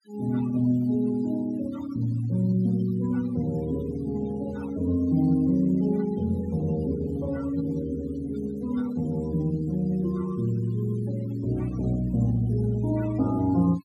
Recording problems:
noise reduction artefacts; signal-to-artefact ratio 21 dB

